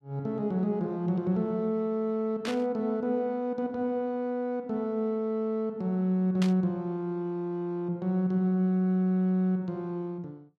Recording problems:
burst of static; at 2.5 s and at 6.5 s; peak -4 dB vs average level

